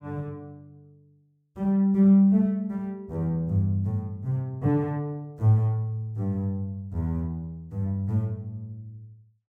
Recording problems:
none

